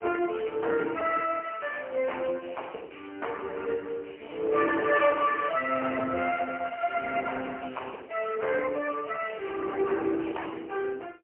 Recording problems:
phone line; 280 Hz to 2.9 kHz, AMR-NB, then MP3

